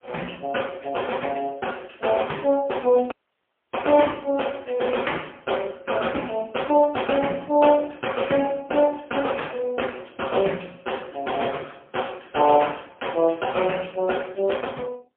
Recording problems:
telephone audio; 260 Hz to 3.3 kHz, AMR-NB, then MP3
audio cutting out; at 3 s for 0.5 s

